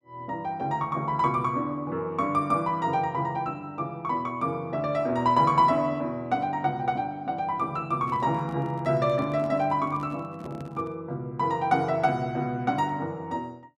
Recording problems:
handling noise; from 8 to 11 s; peak -10 dB vs average level

